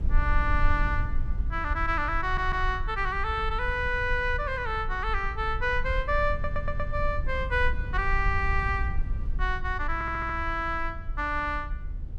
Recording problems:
low-frequency rumble; below 62 Hz, SNR 4 dB
audio stuttering; at 2 s, at 6.5 s and at 10 s

